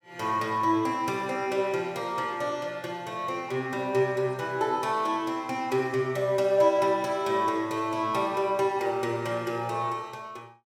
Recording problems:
none

